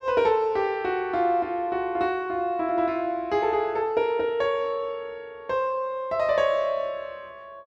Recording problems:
none

